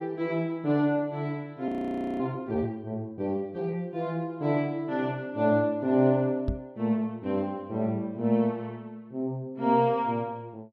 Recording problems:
frozen audio; at 1.5 s for 0.5 s
microphone thump; at 6.5 s; peak +2 dB vs average level

